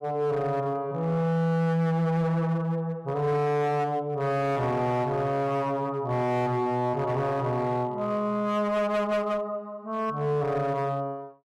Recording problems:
distortion; hard clipping, uneven, signal-to-distortion ratio 11 dB

